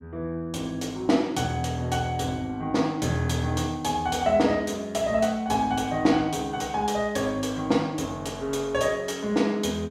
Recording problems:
none

